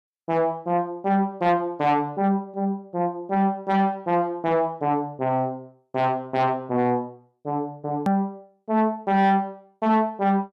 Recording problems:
distortion; soft clipping, signal-to-distortion ratio 12 dB
click at an edit; at 8 s

